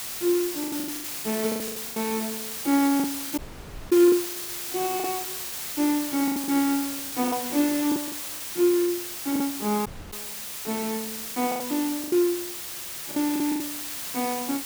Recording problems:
background hiss; slope +1 dB per octave, SNR 5 dB
packet loss; 13% of the sound replaced, filled with the last packet
dropout; at 3.5 s for 0.5 s and at 10 s

